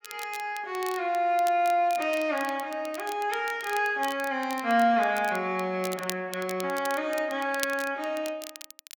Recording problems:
crackle; vinyl, SNR 15 dB

